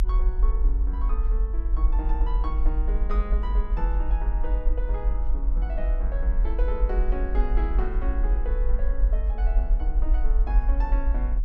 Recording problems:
rumble; below 48 Hz, SNR -10 dB

